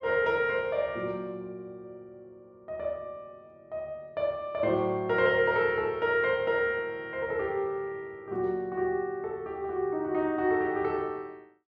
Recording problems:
none

